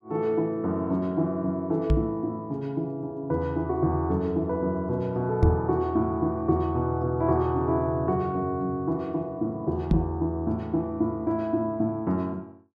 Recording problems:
microphone thump; at 2 s, at 5.5 s and at 10 s; peak +9 dB vs average level

